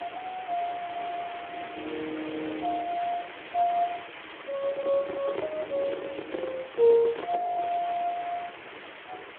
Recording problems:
telephone audio; 260 Hz to 2.8 kHz, Speex
background hiss; SNR 11 dB
handling noise; from 4.5 to 7.5 s; peak +1 dB vs average level
frozen audio; at 7.5 s

